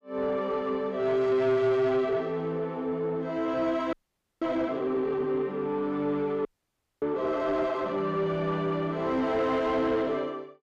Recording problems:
distortion; soft clipping, signal-to-distortion ratio 10 dB
audio freezing; at 4 s and at 6.5 s for 0.5 s

